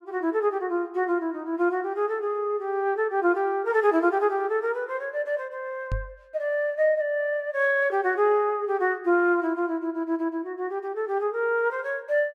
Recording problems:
microphone bump; at 6 s; peak -1 dB vs average level

